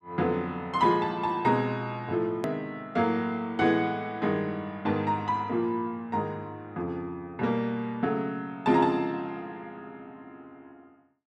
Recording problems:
click at an edit; at 2.5 s

